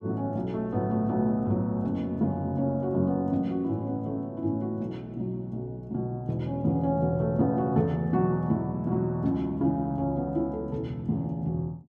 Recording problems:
none

